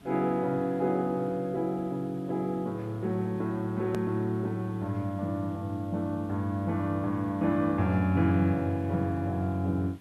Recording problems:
hiss; SNR 25 dB
click at an edit; at 4 s

